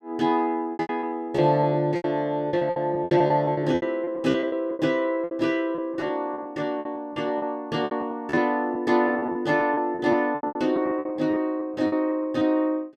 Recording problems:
packet loss; 16% of the sound replaced, filled with repeated pitch periods

